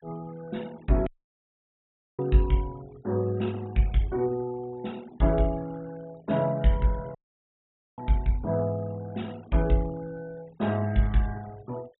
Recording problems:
treble missing; nothing above 3.8 kHz
noise reduction artefacts; signal-to-artefact ratio 25 dB
dropout; at 1 s for 1 s and at 7 s for 1 s

